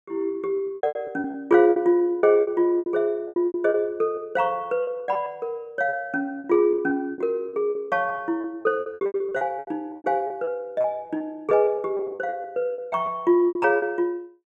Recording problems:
packet loss; 17% of the sound replaced, filled with repeated pitch periods

